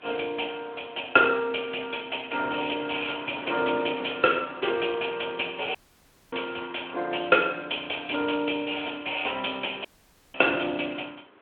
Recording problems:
telephone audio; 220 Hz to 3.5 kHz, Speex
wind on the microphone; below 1.9 kHz, SNR 22 dB
audio cutting out; at 6 s for 0.5 s and at 10 s

